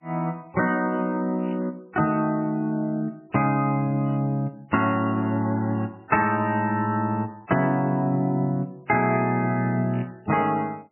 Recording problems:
codec artefacts; MP3, log-spectral distance 2 dB, nothing above 2.5 kHz
burst of static; 4 times, first at 1.5 s; peak -16 dB vs average level

